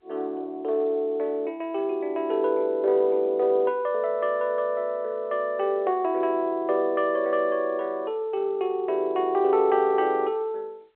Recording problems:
phone line; 340 Hz to 3.8 kHz, G.711

